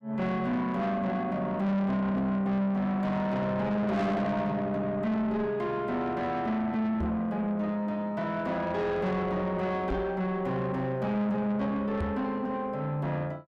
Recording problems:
distortion; soft clipping, signal-to-distortion ratio 8 dB
knock on the microphone; at 7 s, at 10 s and at 12 s; peak +2 dB vs average level

